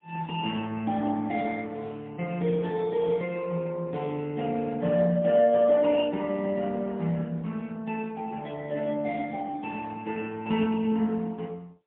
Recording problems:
phone line; 150 Hz to 3.5 kHz, AMR-NB, then MP3

